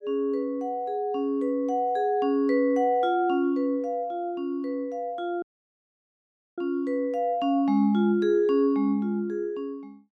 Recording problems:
dropout; at 5.5 s for 1 s

